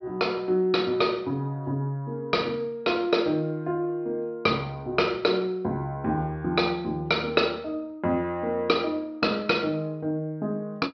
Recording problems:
treble missing; nothing above 5.5 kHz

